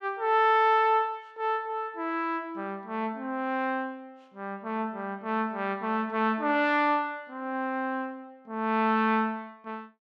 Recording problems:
none

